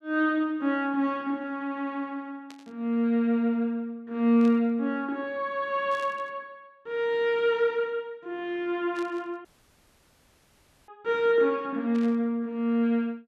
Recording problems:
static burst; 5 times, first at 2.5 s; peak -14 dB vs average level
audio cutting out; at 9.5 s for 1.5 s

